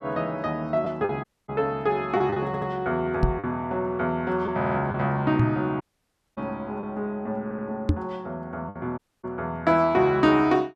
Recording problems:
lost packets; 3% of the sound replaced, filled with the last packet
audio cutting out; at 1 s, at 6 s for 0.5 s and at 9 s
stutter; at 2.5 s, at 4.5 s and at 7.5 s
microphone bump; at 3 s, at 5.5 s and at 8 s; peak +8 dB vs average level

